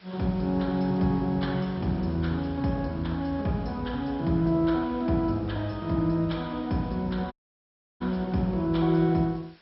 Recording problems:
lossy codec; MP2, log-spectral distance 3 dB, nothing above 5.5 kHz
hiss; SNR 29 dB
audio cutting out; at 7.5 s for 0.5 s

